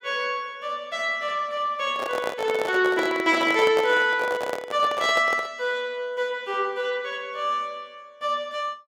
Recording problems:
microphone handling noise; from 2 to 5.5 s; peak 0 dB vs average level

